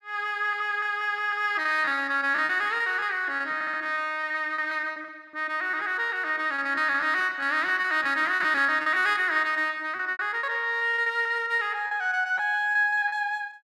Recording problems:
packet loss; 14% of the sound replaced, filled with repeated pitch periods
audio stuttering; at 3.5 s

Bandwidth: 15 kHz